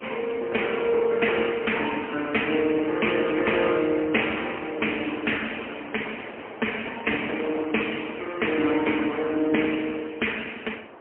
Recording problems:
telephone audio; 240 Hz to 3.1 kHz, AMR-NB, then MP3
wind noise; below 1.1 kHz, SNR 15 dB

